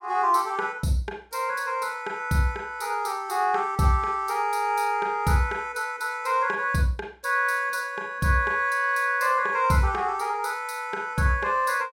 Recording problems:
none

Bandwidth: 16 kHz